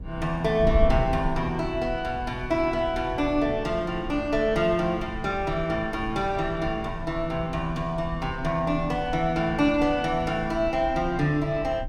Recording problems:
wind on the microphone; below 86 Hz, SNR 11 dB

